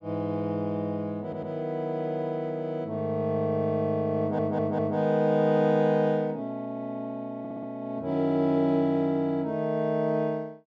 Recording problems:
audio stuttering; at 1 s, at 4 s and at 7.5 s

